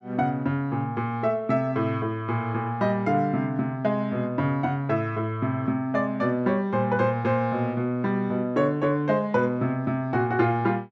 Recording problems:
none

